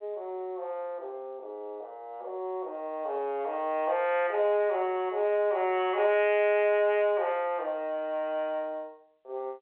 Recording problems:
phone line; 320 Hz to 3.3 kHz, G.711

